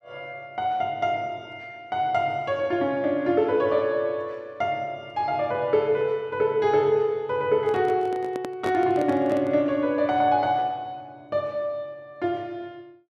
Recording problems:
handling noise; from 7.5 to 9.5 s; peak -3 dB vs average level

